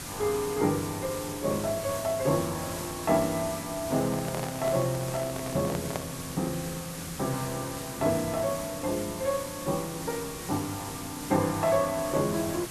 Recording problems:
background hiss; slope -2 dB per octave, SNR 8 dB
handling noise; from 4 to 6 s; peak 0 dB vs average level

